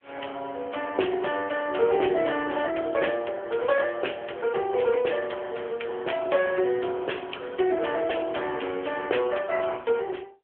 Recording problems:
phone line; 300 Hz to 3.3 kHz, AMR-NB

